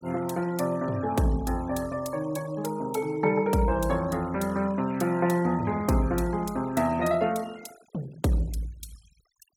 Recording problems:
denoising artefacts; signal-to-artefact ratio 21 dB

